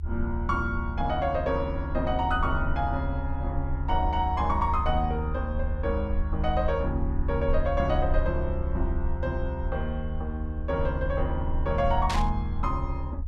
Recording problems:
low-frequency rumble; below 74 Hz, SNR 2 dB
burst of static; at 12 s; peak +1 dB vs average level

